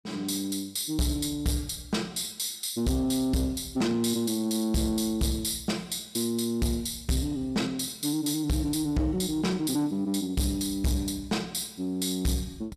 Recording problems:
distortion; soft clipping, signal-to-distortion ratio 8 dB

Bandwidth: 14.5 kHz